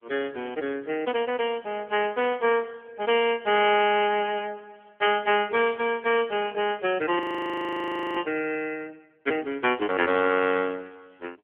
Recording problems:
telephone audio; 260 Hz to 3.3 kHz, AMR-NB
audio freezing; at 7 s for 1 s

